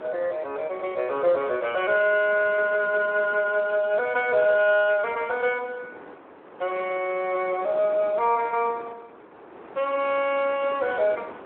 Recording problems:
telephone audio; 300 Hz to 2.9 kHz, Speex
wind on the microphone; below 1.1 kHz, SNR 19 dB

